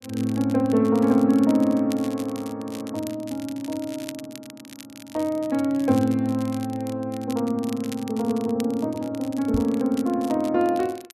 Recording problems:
crackle; vinyl, SNR 20 dB
microphone bump; at 9.5 s; peak +1 dB vs average level

